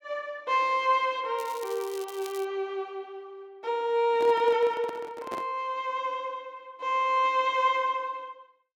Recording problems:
crackling; from 1.5 to 2.5 s; loose cable, SNR 18 dB
handling noise; from 4 to 5.5 s; peak -6 dB vs average level

